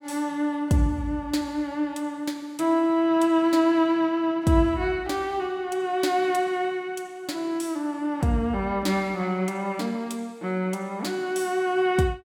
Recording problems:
none

